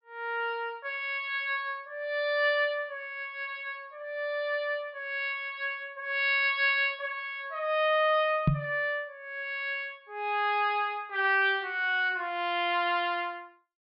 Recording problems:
treble missing; nothing above 5.5 kHz
microphone bump; at 8.5 s; peak +8 dB vs average level

